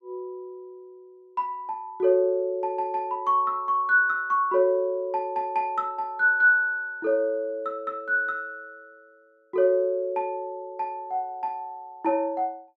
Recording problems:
none

